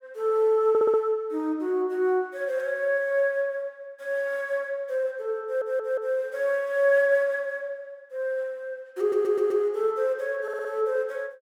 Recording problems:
stutter; 4 times, first at 0.5 s

